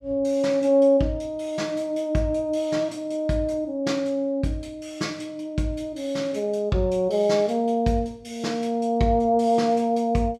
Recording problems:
none

